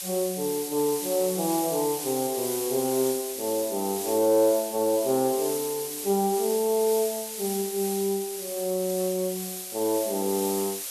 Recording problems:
background hiss; SNR 6 dB

